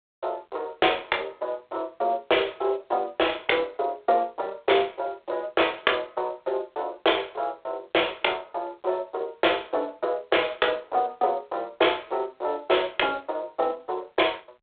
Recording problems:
telephone audio; 320 Hz to 3.6 kHz, G.726

